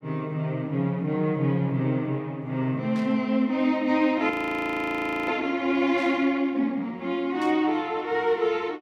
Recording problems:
burst of static; at 3 s, at 6 s and at 7.5 s; peak -14 dB vs average level
frozen audio; at 4.5 s for 1 s

